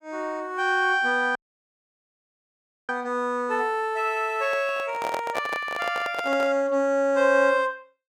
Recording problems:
audio cutting out; at 1.5 s for 1.5 s
handling noise; from 4.5 to 6.5 s; peak 0 dB vs average level

